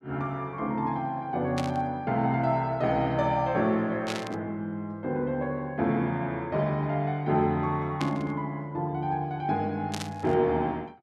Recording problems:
static burst; 4 times, first at 1.5 s; peak -2 dB vs average level

